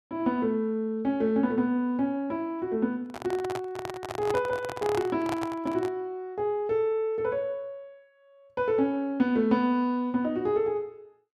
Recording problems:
microphone handling noise; from 3 to 6 s; peak -1 dB vs average level

